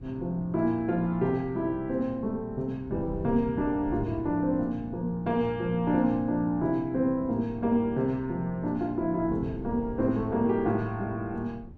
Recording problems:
wind on the microphone; below 160 Hz, SNR 16 dB

